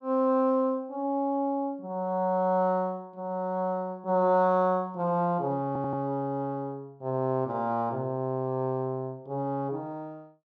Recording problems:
audio stuttering; at 5.5 s

